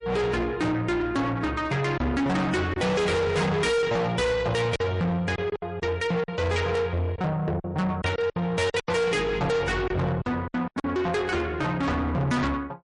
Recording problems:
lossy codec; MP3, log-spectral distance 2 dB, nothing above 10.4 kHz
distortion; soft clipping, signal-to-distortion ratio 6 dB
packet loss; 6% of the sound replaced, filled with silence

